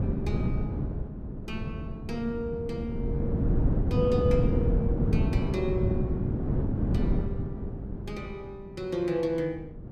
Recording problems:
wind on the microphone; below 220 Hz, SNR -4 dB

